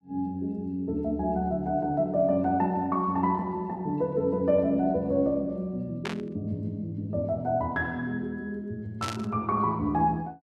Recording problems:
burst of static; at 6 s and at 9 s; peak -2 dB vs average level

